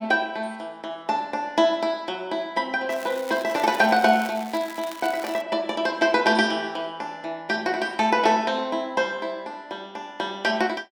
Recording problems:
crackling; from 3 to 5.5 s; loose cable, SNR 17 dB

